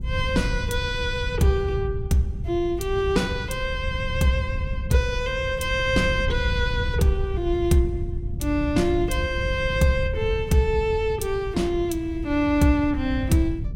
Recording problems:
wind on the microphone; below 110 Hz, SNR 6 dB

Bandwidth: 16 kHz